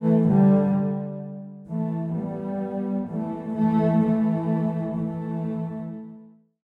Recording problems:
none

